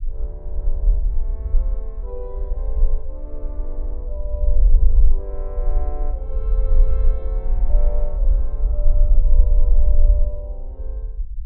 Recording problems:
treble cut off; nothing above 4.2 kHz
low-frequency rumble; below 42 Hz, strongest tone 20 Hz, SNR -16 dB

